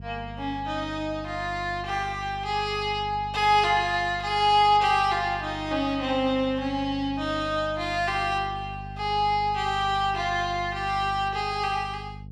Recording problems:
hum; 50 Hz, harmonics up to 450 Hz, SNR 15 dB

